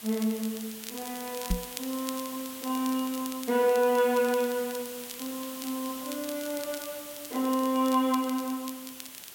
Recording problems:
background hiss; slope 0 dB per octave, SNR 11 dB
crackling; vinyl, SNR 15 dB
knock on the microphone; at 1.5 s; peak +4 dB vs average level

